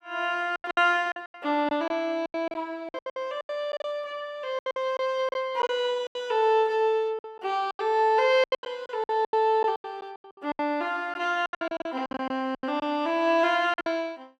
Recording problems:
packet loss; 16% of the sound replaced, filled with silence

